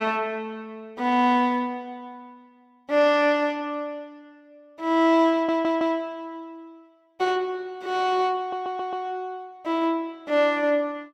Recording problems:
audio stuttering; at 5.5 s and at 8.5 s

